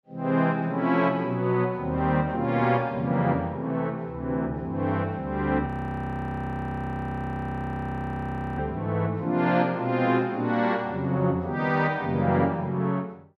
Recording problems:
audio freezing; at 5.5 s for 3 s

